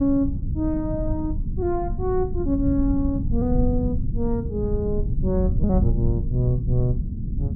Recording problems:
low-frequency rumble; below 120 Hz, SNR 1 dB

